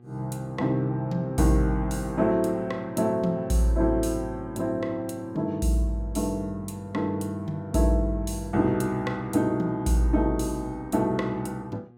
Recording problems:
mains hum; 60 Hz, harmonics up to 1.2 kHz, SNR 26 dB

